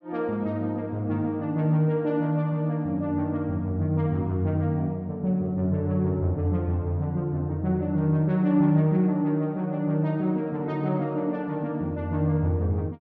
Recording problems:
treble missing; nothing above 8 kHz

